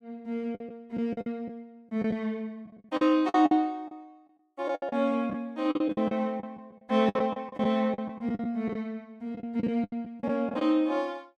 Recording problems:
packet loss; 13% of the sound replaced, filled with the last packet

